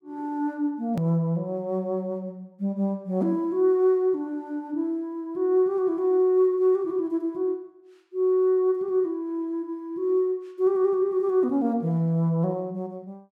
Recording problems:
click at an edit; at 1 s

